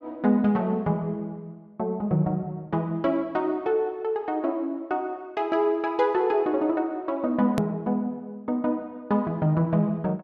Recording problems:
hard cut with a click; at 7.5 s

